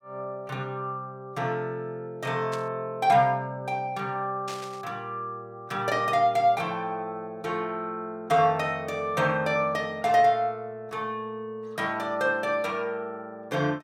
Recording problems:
burst of static; at 2.5 s and at 4.5 s; peak -7 dB vs average level

